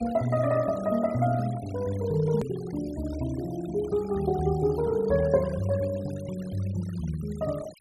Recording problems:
denoising artefacts; signal-to-artefact ratio 20 dB
click at an edit; at 2.5 s

